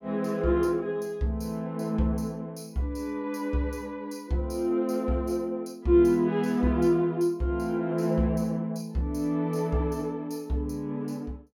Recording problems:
none

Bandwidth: 17 kHz